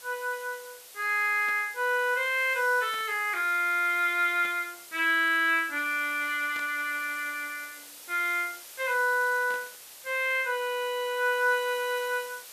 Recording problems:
background hiss; slope +1 dB per octave, SNR 17 dB
static burst; 5 times, first at 1.5 s; peak -13 dB vs average level

